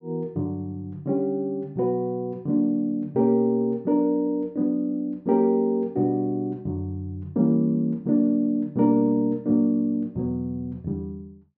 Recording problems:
treble missing; nothing above 8 kHz

